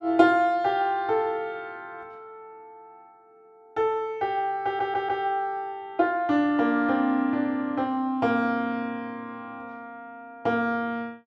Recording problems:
stutter; at 4.5 s

